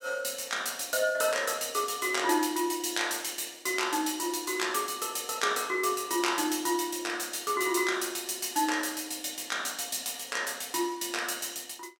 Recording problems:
none

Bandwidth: 17 kHz